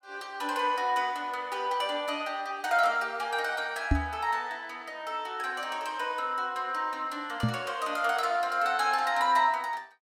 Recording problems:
knock on the microphone; at 4 s and at 7.5 s; peak +7 dB vs average level

